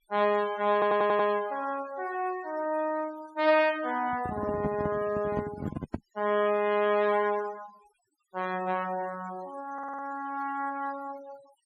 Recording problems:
denoising artefacts; signal-to-artefact ratio 19 dB
stutter; at 0.5 s and at 9.5 s
handling noise; from 4 to 6 s; peak +1 dB vs average level

